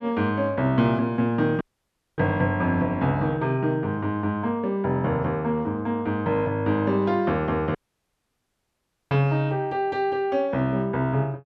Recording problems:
dropout; at 1.5 s for 0.5 s and at 8 s for 1.5 s

